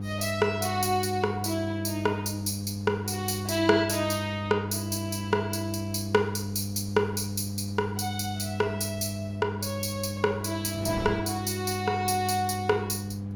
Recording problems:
electrical hum; 50 Hz, harmonics up to 700 Hz, SNR 5 dB
wind noise; below 440 Hz, SNR 19 dB

